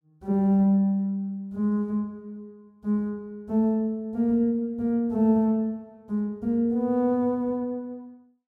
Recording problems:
none

